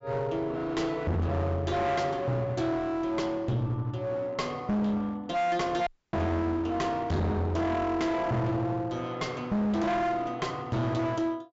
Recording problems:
treble cut off; nothing above 8 kHz
distortion; hard clipping, uneven, signal-to-distortion ratio 5 dB
dropout; at 6 s

